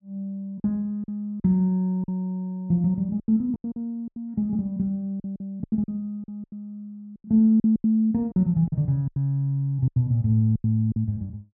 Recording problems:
packet loss; 12% of the sound replaced, filled with silence

